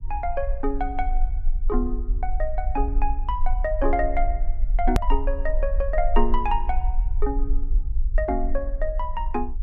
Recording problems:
low-frequency rumble; below 40 Hz, strongest tone 18 Hz, SNR 0 dB
hard cut with a click; at 5 s

